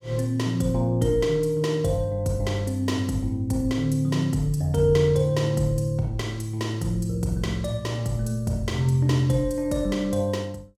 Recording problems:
none

